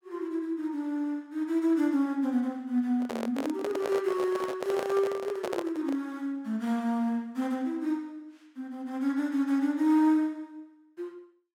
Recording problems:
microphone handling noise; from 3 to 6 s; peak -1 dB vs average level

